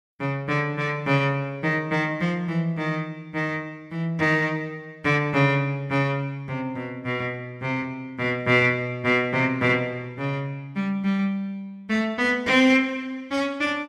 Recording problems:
none

